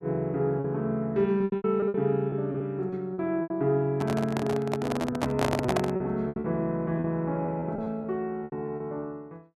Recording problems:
lost packets; 11% of the sound replaced, filled with repeated pitch periods
handling noise; from 4 to 6 s; peak +5 dB vs average level

